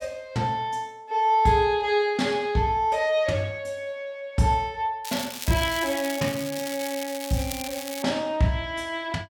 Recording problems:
crackle; from 5 to 8 s; loose cable, SNR 9 dB

